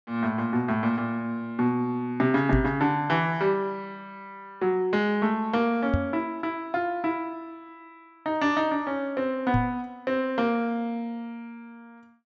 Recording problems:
treble cut off; nothing above 8 kHz
knock on the microphone; at 2.5 s, at 6 s and at 9.5 s; peak +4 dB vs average level

